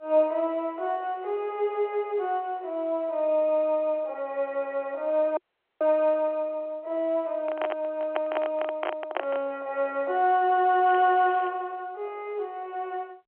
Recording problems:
telephone audio; 320 Hz to 3.3 kHz, G.711
dropout; at 5.5 s
microphone handling noise; from 7.5 to 9.5 s; peak +1 dB vs average level
crackling; at 11 s; loose cable, SNR 26 dB

